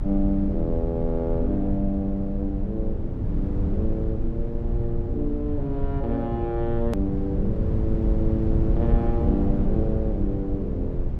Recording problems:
rumble; below 110 Hz, SNR 0 dB
hard cut with a click; at 7 s

